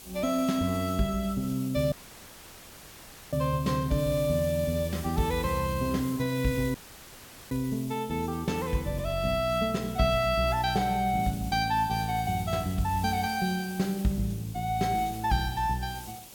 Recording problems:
background hiss; SNR 16 dB
dropout; at 2 s for 1.5 s and at 7 s for 1 s; filled with static

